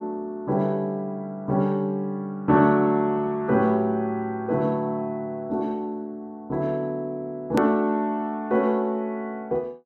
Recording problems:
click at an edit; at 7.5 s

